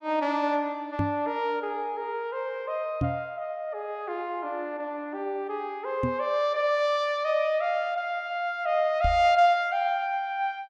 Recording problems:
microphone thump; 4 times, first at 1 s; peak +3 dB vs average level

